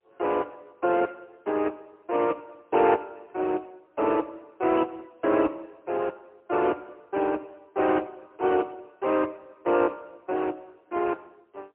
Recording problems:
phone line; 280 Hz to 3.1 kHz, AMR-NB, then MP3

